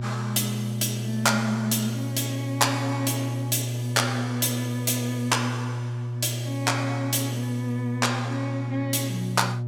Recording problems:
electrical hum; 60 Hz, harmonics up to 600 Hz, SNR 4 dB

